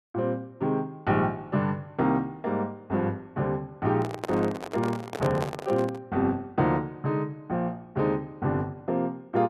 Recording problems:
microphone handling noise; from 4 to 6 s; peak 0 dB vs average level

